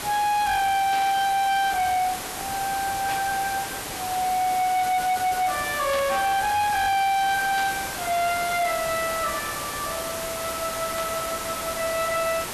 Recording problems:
distortion; hard clipping, signal-to-distortion ratio 10 dB
hiss; slope -3 dB per octave, SNR 7 dB
burst of static; 5 times, first at 1 s; peak -6 dB vs average level

